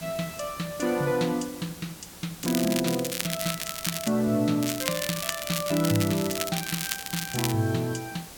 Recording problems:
background hiss; slope -2 dB per octave, SNR 14 dB
crackle; from 2.5 to 4 s and from 4.5 to 7.5 s; loose cable, SNR 3 dB

